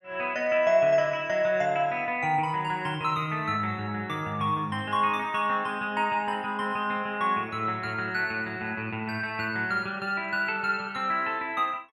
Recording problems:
none

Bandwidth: 12.5 kHz